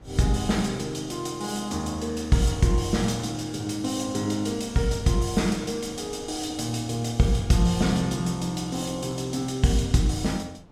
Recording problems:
wind on the microphone; below 460 Hz, SNR 24 dB

